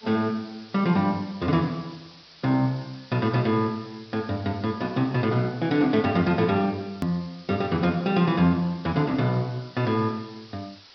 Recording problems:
treble cut off; nothing above 5.5 kHz
background hiss; SNR 23 dB
edit click; at 7 s

